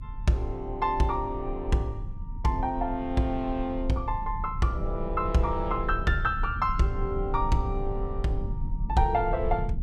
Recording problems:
rumble; below 68 Hz, strongest tone 30 Hz, SNR 7 dB

